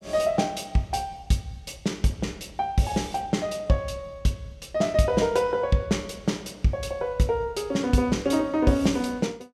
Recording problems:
none

